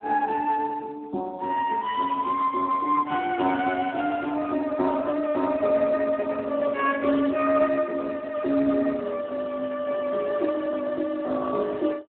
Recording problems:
telephone audio; 240 Hz to 2.8 kHz, Speex

